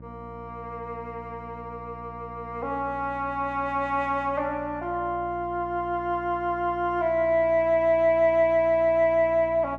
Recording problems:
electrical hum; 60 Hz, harmonics up to 900 Hz, SNR 20 dB

